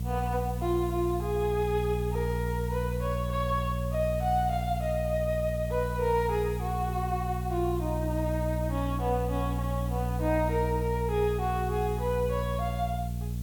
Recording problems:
hum; 60 Hz, harmonics up to 420 Hz, SNR 2 dB
background hiss; SNR 19 dB

